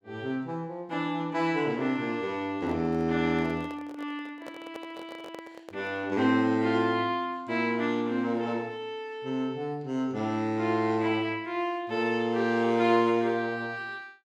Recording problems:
handling noise; from 2.5 to 6 s; peak -10 dB vs average level

